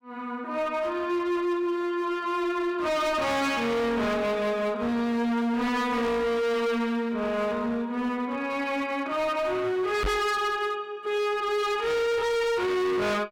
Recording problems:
distorted audio; hard clipping, signal-to-distortion ratio 6 dB
microphone bump; at 10 s; peak +2 dB vs average level

